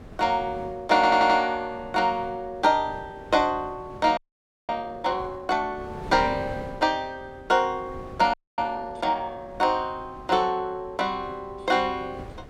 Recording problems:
wind noise; below 450 Hz, SNR 19 dB
audio stuttering; at 1 s
audio freezing; at 4 s for 0.5 s and at 8.5 s

